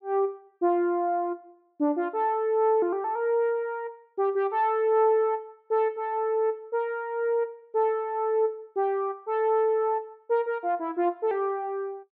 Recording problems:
none

